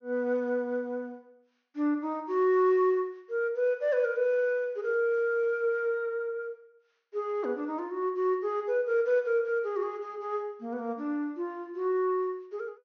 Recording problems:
treble missing; nothing above 6.5 kHz

